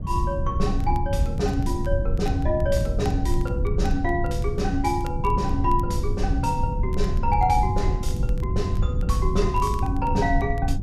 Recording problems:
low-frequency rumble; below 110 Hz, SNR 0 dB
crackling; vinyl, SNR 25 dB

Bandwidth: 14.5 kHz